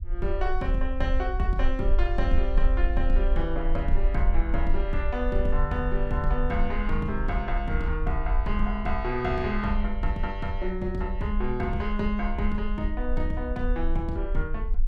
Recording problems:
low-frequency rumble; below 44 Hz, SNR 1 dB

